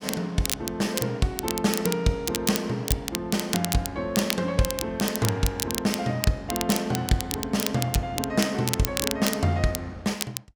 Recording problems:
crackling; vinyl, SNR 5 dB

